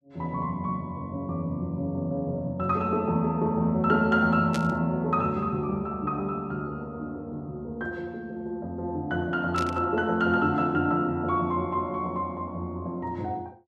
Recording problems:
static burst; at 4.5 s and at 9.5 s; peak -4 dB vs average level

